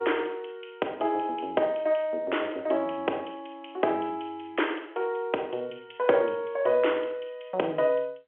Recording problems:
telephone audio; 320 Hz to 3.3 kHz, G.711

